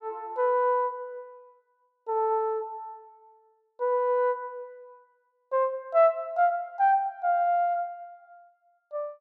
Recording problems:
none

